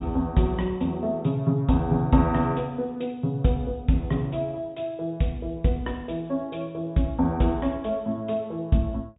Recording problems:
treble cut off; nothing above 4 kHz

